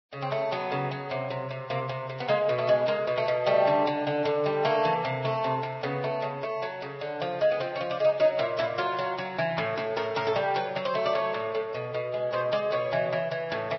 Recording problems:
codec artefacts; Vorbis, log-spectral distance 4 dB, nothing above 5.7 kHz

